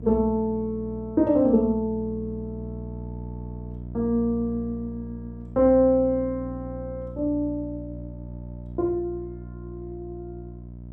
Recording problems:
hum; 60 Hz, harmonics up to 660 Hz, SNR 13 dB

